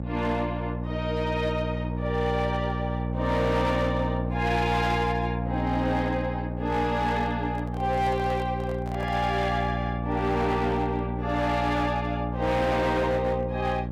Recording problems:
distortion; hard clipping, signal-to-distortion ratio 12 dB
electrical hum; 60 Hz, harmonics up to 840 Hz, SNR 3 dB
microphone handling noise; from 7.5 to 9.5 s; peak -7 dB vs average level

